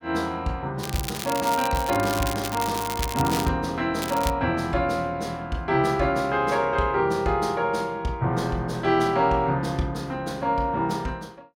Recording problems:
crackling; from 1 to 3.5 s and at 4 s; loose cable, SNR 9 dB

